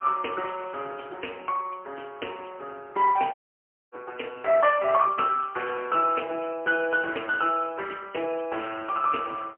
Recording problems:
phone line; 300 Hz to 3 kHz, AMR-NB, then MP3
dropout; at 3.5 s for 0.5 s

